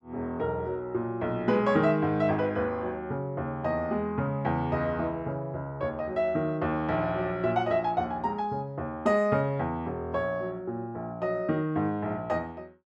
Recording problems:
none

